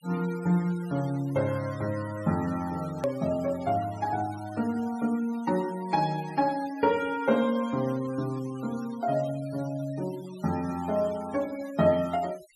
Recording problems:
denoising artefacts; signal-to-artefact ratio 19 dB
click at an edit; at 3 s

